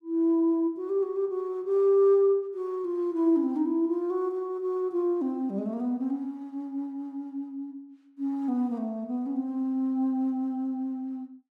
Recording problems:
none

